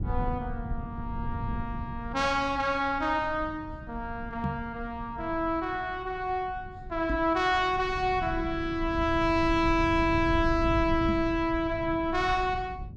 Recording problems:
rumble; below 120 Hz, SNR 10 dB
knock on the microphone; at 4.5 s, at 7 s and at 11 s; peak 0 dB vs average level

